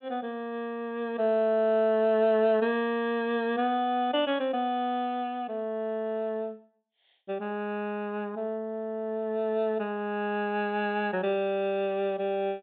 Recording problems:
treble missing; nothing above 4 kHz

